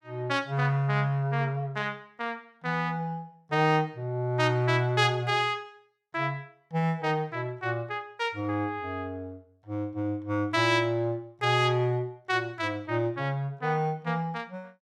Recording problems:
none

